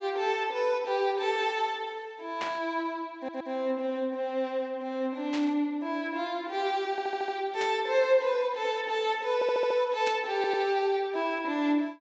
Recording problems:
treble missing; nothing above 8 kHz
burst of static; 4 times, first at 2.5 s; peak -3 dB vs average level
stutter; 4 times, first at 3 s

